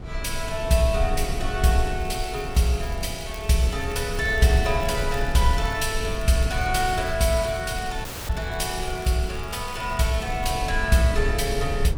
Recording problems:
rumble; below 80 Hz, strongest tone 22 Hz, SNR 8 dB
crackle; from 2 to 6.5 s and from 7 to 11 s; loose cable, SNR 22 dB
dropout; at 8 s

